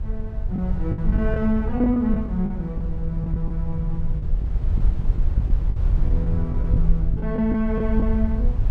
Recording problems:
low-frequency rumble; below 70 Hz, SNR 0 dB
lost packets; 9% of the sound replaced, filled with the last packet

